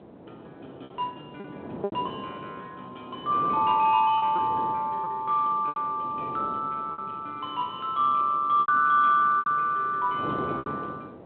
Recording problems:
phone line; 320 Hz to 3.7 kHz, G.726
wind on the microphone; below 610 Hz, SNR 16 dB
lost packets; 6% of the sound replaced, filled with repeated pitch periods

